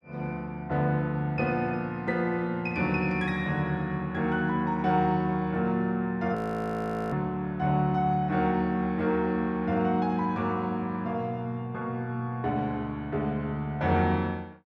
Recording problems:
frozen audio; at 6.5 s for 1 s

